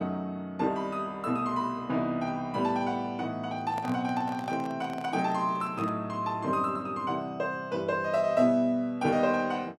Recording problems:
microphone handling noise; from 3.5 to 6 s; peak -6 dB vs average level

